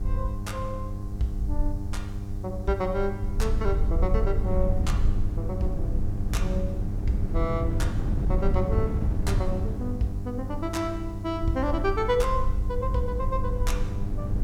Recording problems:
mains hum; 50 Hz, harmonics up to 800 Hz, SNR 5 dB
background hiss; SNR 29 dB
rumble; below 56 Hz, SNR 3 dB
wind noise; below 120 Hz, SNR 2 dB

